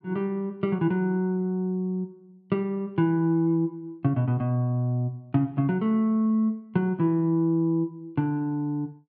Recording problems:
none

